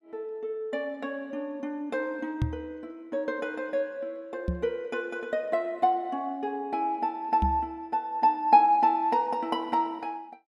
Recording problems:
microphone thump; at 2.5 s, at 4.5 s and at 7.5 s; peak +4 dB vs average level

